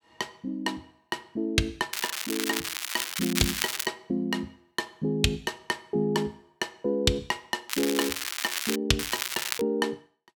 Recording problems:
crackle; from 2 to 4 s, from 7.5 to 9 s and at 9 s; loose cable, SNR 1 dB

